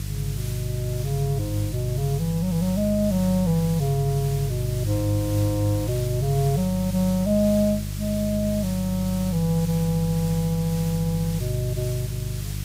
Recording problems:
hum; 50 Hz, harmonics up to 350 Hz, SNR 6 dB
hiss; slope +1 dB per octave, SNR 13 dB

